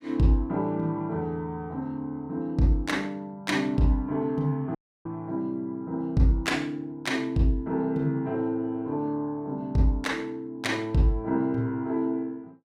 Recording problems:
audio cutting out; at 5 s

